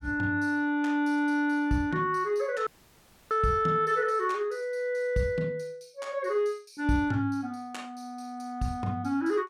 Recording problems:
dropout; at 2.5 s for 0.5 s

